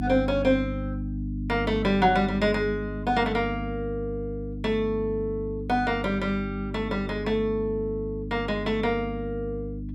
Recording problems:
hum; 50 Hz, harmonics up to 300 Hz, SNR 7 dB

